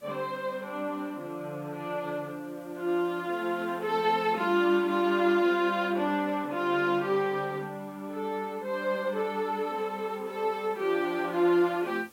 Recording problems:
hiss; slope -3 dB per octave, SNR 28 dB

